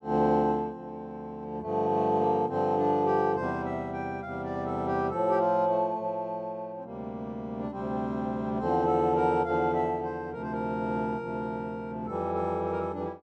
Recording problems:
none

